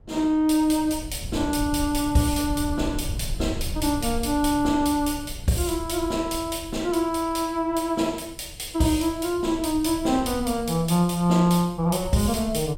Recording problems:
wind on the microphone; below 100 Hz, SNR 13 dB

